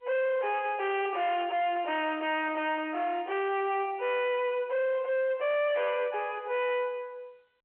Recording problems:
telephone audio; 340 Hz to 2.3 kHz, G.711
distorted audio; hard clipping, signal-to-distortion ratio 6 dB

